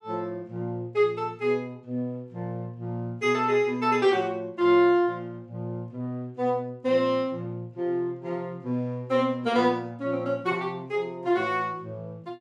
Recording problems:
none

